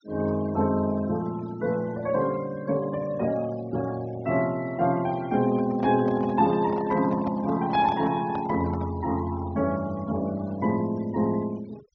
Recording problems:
low-pass filter; nothing above 6.3 kHz
denoising artefacts; signal-to-artefact ratio 21 dB
handling noise; from 5.5 to 9 s; peak -6 dB vs average level

